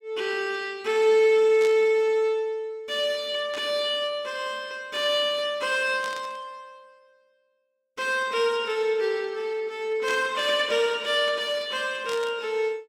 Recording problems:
static burst; 5 times, first at 1.5 s; peak -8 dB vs average level

